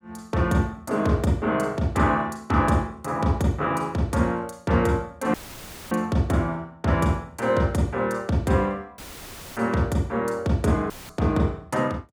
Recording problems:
dropout; at 5.5 s for 0.5 s, at 9 s for 0.5 s and at 11 s; filled with static

